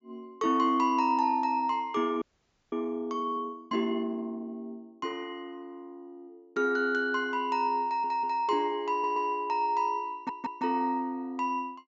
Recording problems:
treble missing; nothing above 7.4 kHz
frozen audio; at 2 s for 0.5 s
stutter; at 8 s, at 9 s and at 10 s

